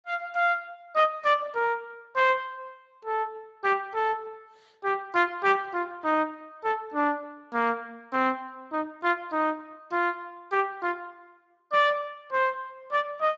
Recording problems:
lossy codec; Speex, log-spectral distance 3 dB

